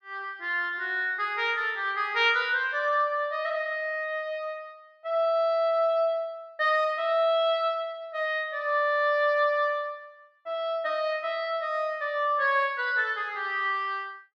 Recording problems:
none

